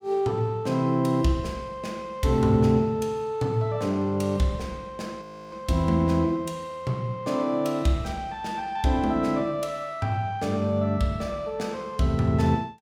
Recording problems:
frozen audio; at 5 s

